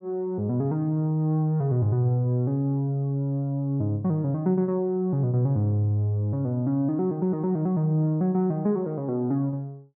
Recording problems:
none

